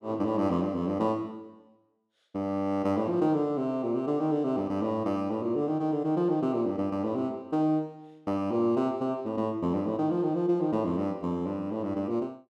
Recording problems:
none

